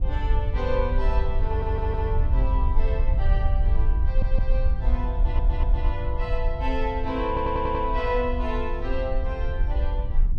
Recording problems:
wind noise; below 60 Hz, SNR -4 dB
audio stuttering; 4 times, first at 1.5 s

